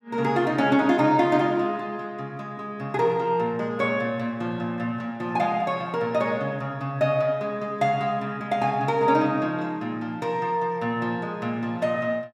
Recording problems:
none

